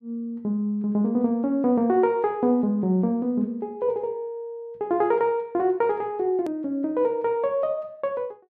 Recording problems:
edit click; at 6.5 s

